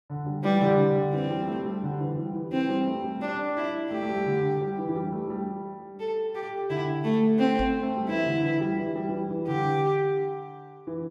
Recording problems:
microphone bump; at 7.5 s; peak -1 dB vs average level

